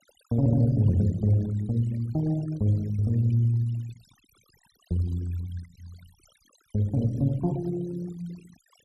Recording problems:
denoising artefacts; signal-to-artefact ratio 23 dB

